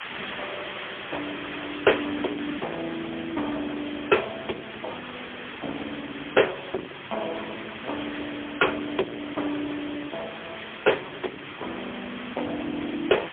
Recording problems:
telephone audio; 260 Hz to 2.6 kHz, AMR-NB, then MP3
distorted audio; soft clipping, signal-to-distortion ratio 15 dB
background hiss; SNR 7 dB

